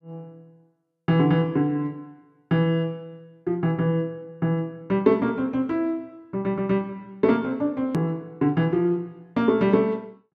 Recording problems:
hard cut with a click; at 8 s

